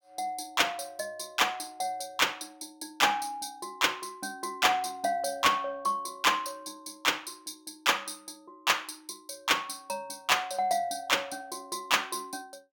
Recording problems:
distortion; soft clipping, signal-to-distortion ratio 11 dB

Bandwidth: 17 kHz